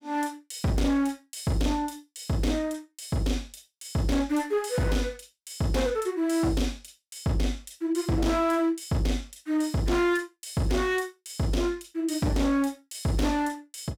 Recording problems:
distorted audio; hard clipping, signal-to-distortion ratio 10 dB

